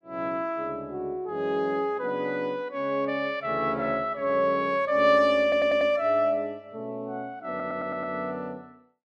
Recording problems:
audio stuttering; at 5.5 s and at 7.5 s

